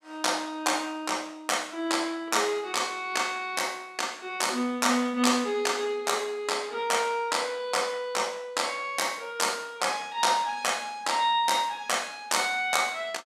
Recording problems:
none

